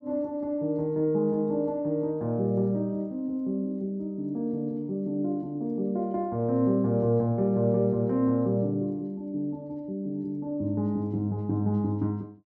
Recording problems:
none

